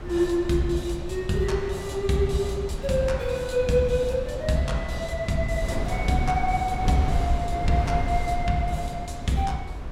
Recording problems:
wind on the microphone; below 170 Hz, SNR 7 dB

